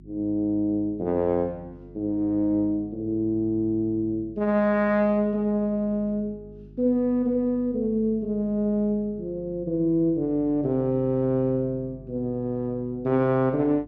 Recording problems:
mains hum; 50 Hz, harmonics up to 350 Hz, SNR 22 dB

